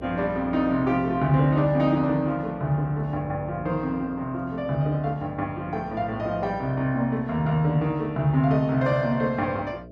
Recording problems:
mains hum; 60 Hz, harmonics up to 660 Hz, SNR 18 dB

